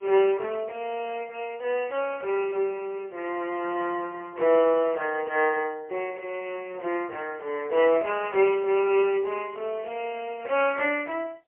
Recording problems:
telephone audio; 340 Hz to 3.1 kHz, AMR-NB, then MP3

